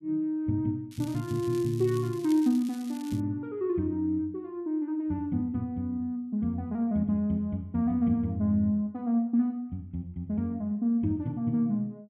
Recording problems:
crackle; from 1 to 3 s; loose cable, SNR 20 dB

